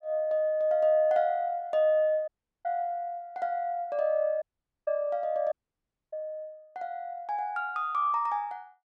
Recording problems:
audio cutting out; at 2.5 s, at 4.5 s and at 5.5 s for 0.5 s

